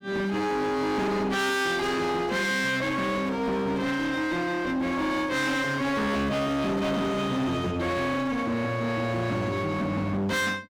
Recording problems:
distorted audio; hard clipping, uneven, signal-to-distortion ratio 6 dB

